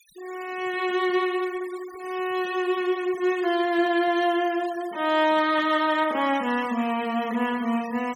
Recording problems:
denoising artefacts; signal-to-artefact ratio 19 dB

